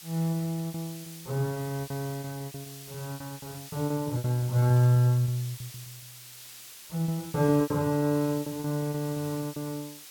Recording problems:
background hiss; slope +2 dB per octave, SNR 15 dB
packet loss; 18% of the sound replaced, filled with repeated pitch periods

